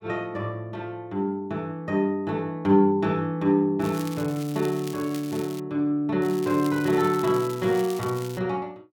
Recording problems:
crackling; from 4 to 5.5 s and from 6 to 8.5 s; loose cable, SNR 17 dB

